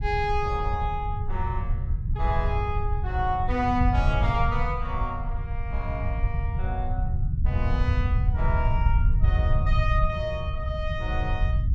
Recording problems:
low-frequency rumble; below 92 Hz, SNR -3 dB

